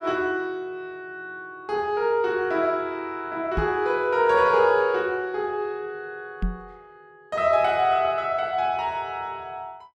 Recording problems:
microphone thump; at 3.5 s and at 6.5 s; peak 0 dB vs average level

